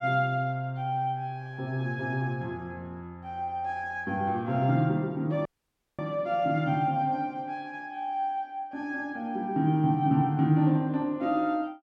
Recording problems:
dropout; at 5.5 s for 0.5 s

